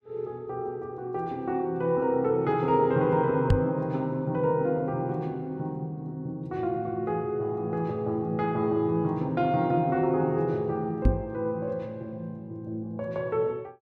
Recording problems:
microphone bump; at 3.5 s and at 11 s; peak +8 dB vs average level

